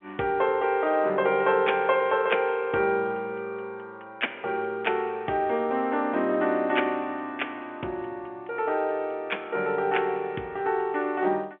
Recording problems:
phone line; 190 Hz to 3.3 kHz, G.711

